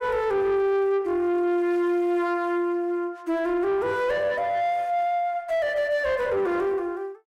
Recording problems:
distortion; soft clipping, signal-to-distortion ratio 11 dB

